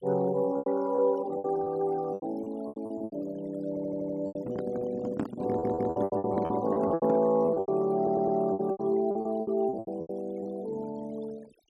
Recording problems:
noise reduction artefacts; signal-to-artefact ratio 21 dB
lost packets; 16% of the sound replaced, filled with repeated pitch periods
stutter; at 3.5 s, at 5.5 s and at 8 s
microphone handling noise; from 4.5 to 7 s; peak +3 dB vs average level

